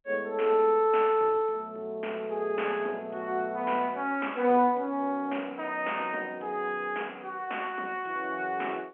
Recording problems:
telephone audio; 300 Hz to 3.2 kHz, G.711

